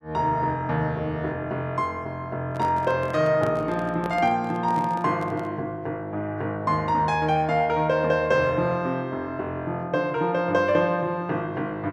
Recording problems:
handling noise; from 2.5 to 5.5 s; peak -4 dB vs average level

